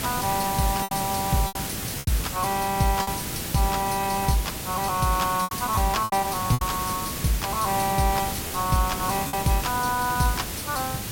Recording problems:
background hiss; SNR 4 dB
wind noise; below 430 Hz, SNR 18 dB
lost packets; 5% of the sound replaced, filled with repeated pitch periods

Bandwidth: 16.5 kHz